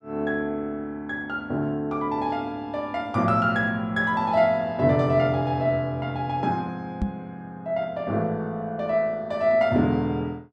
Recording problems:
knock on the microphone; at 7 s; peak +2 dB vs average level

